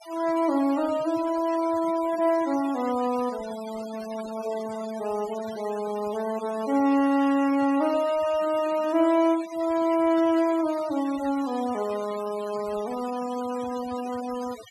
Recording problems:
noise reduction artefacts; signal-to-artefact ratio 17 dB

